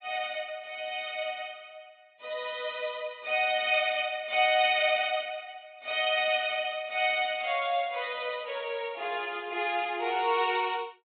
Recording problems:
treble cut off; nothing above 4 kHz

